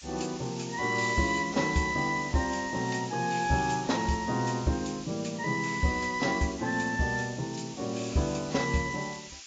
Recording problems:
lossy codec; AAC, log-spectral distance 13 dB, nothing above 7.3 kHz
hiss; SNR 14 dB

